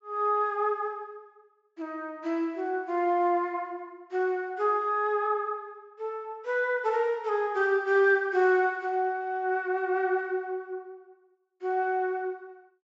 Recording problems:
treble cut off; nothing above 8 kHz

